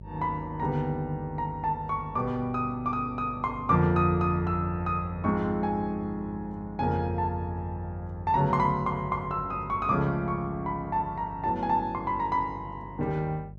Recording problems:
hum; 50 Hz, harmonics up to 600 Hz, SNR 16 dB

